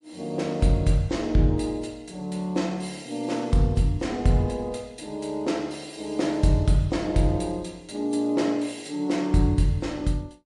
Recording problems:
lossy compression; MP3, log-spectral distance 2 dB, nothing above 9.2 kHz

